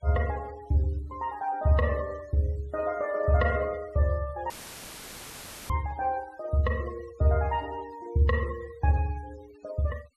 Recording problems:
noise reduction artefacts; signal-to-artefact ratio 23 dB
dropout; at 4.5 s for 1 s; filled with static

